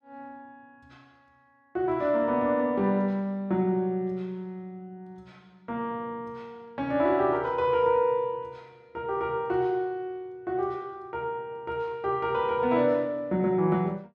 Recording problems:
none

